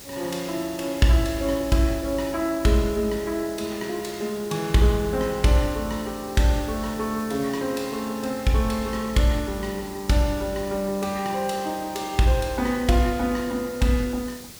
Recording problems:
background hiss; SNR 16 dB

